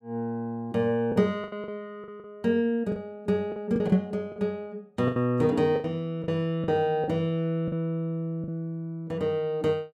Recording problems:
lost packets; 8% of the sound replaced, filled with the last packet

